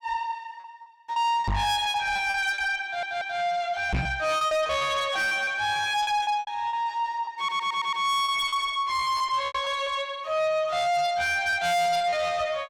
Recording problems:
distortion; soft clipping, signal-to-distortion ratio 8 dB
lost packets; 9% of the sound replaced, filled with repeated pitch periods
microphone bump; at 1.5 s and at 4 s; peak +2 dB vs average level
audio stuttering; at 3 s and at 7.5 s

